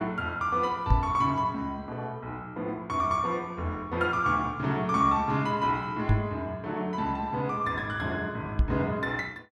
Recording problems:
microphone thump; at 1 s, at 6 s and at 8.5 s; peak +8 dB vs average level

